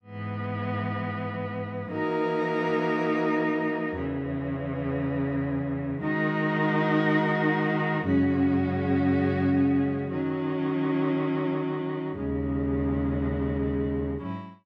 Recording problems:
none

